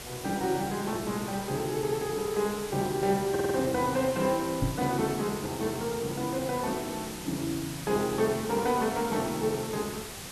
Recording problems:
hiss; slope -2 dB per octave, SNR 10 dB
audio stuttering; at 3.5 s
microphone thump; at 4.5 s; peak +4 dB vs average level

